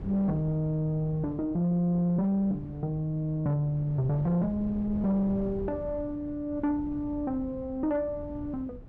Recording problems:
distorted audio; soft clipping, signal-to-distortion ratio 12 dB
wind noise; below 200 Hz, SNR 14 dB

